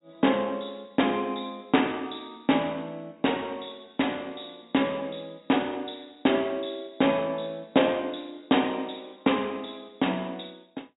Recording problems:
low-pass filter; nothing above 4 kHz

